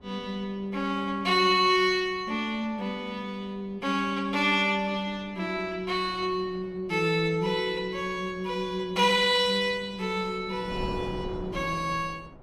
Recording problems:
wind on the microphone; below 510 Hz, SNR 19 dB

